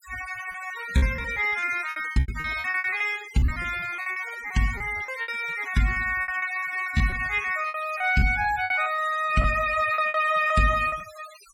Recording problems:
denoising artefacts; signal-to-artefact ratio 16 dB
packet loss; 15% of the sound replaced, filled with repeated pitch periods

